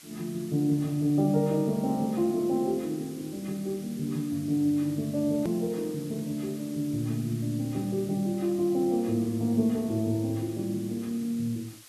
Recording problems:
background hiss; slope +2 dB per octave, SNR 20 dB
hard cut with a click; at 5.5 s

